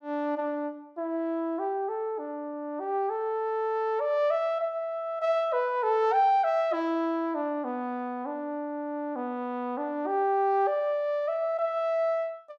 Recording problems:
none

